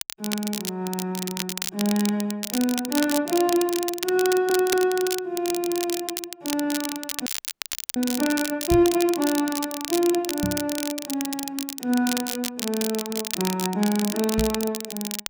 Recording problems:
crackle; vinyl, SNR 5 dB
stutter; at 4.5 s
frozen audio; at 7.5 s for 0.5 s
microphone thump; at 8.5 s, at 10 s and at 14 s; peak +2 dB vs average level

